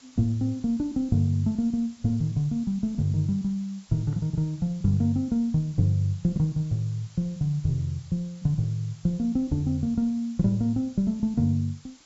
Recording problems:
low-pass filter; nothing above 8 kHz
background hiss; slope 0 dB per octave, SNR 27 dB

